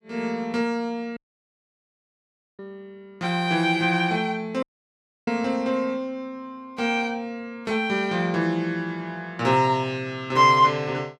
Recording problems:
dropout; at 1 s for 1.5 s and at 4.5 s for 0.5 s

